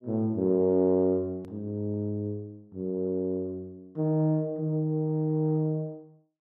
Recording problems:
click at an edit; at 1.5 s

